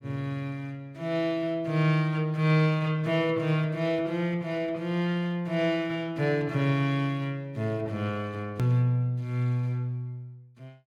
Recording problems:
edit click; at 8.5 s

